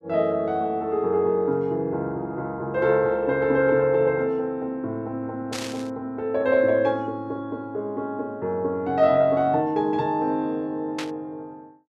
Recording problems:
burst of static; at 5.5 s and at 11 s; peak -4 dB vs average level

